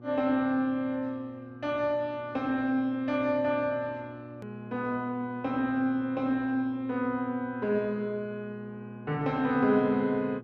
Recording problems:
electrical hum; 60 Hz, harmonics up to 1.1 kHz, SNR 17 dB
edit click; at 4.5 s

